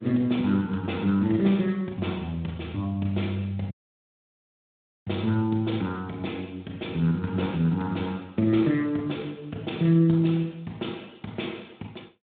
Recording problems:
telephone audio; 110 Hz to 3.7 kHz, Speex
dropout; at 3.5 s for 1.5 s

